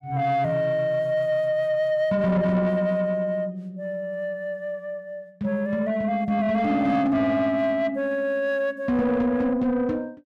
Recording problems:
distorted audio; soft clipping, signal-to-distortion ratio 12 dB

